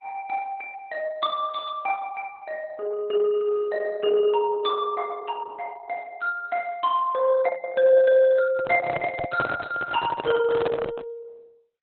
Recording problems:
lossy compression; Opus, log-spectral distance 3 dB, nothing above 3.5 kHz
microphone handling noise; from 8.5 to 11 s; peak +3 dB vs average level

